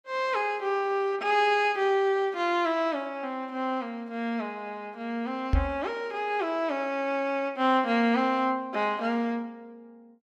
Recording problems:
microphone thump; at 5.5 s; peak +6 dB vs average level

